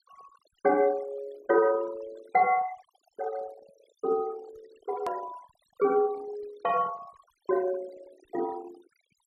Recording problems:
denoising artefacts; signal-to-artefact ratio 20 dB
edit click; at 5 s

